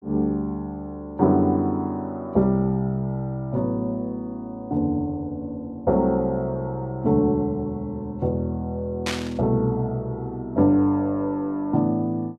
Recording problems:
burst of static; at 9 s; peak 0 dB vs average level

